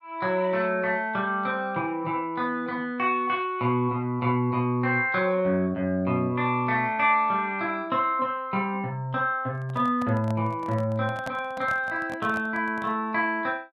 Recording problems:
microphone handling noise; from 9.5 to 13 s; peak -6 dB vs average level

